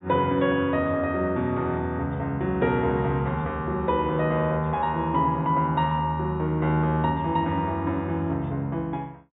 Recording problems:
low-pass filter; nothing above 4 kHz

